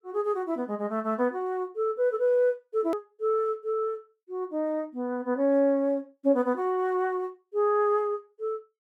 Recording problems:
edit click; at 3 s

